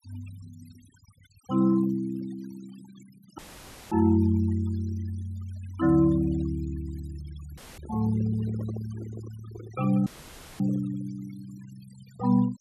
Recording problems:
denoising artefacts; signal-to-artefact ratio 22 dB
dropout; at 3.5 s for 0.5 s, at 7.5 s and at 10 s for 0.5 s; filled with static
handling noise; from 7.5 to 11 s; peak -9 dB vs average level

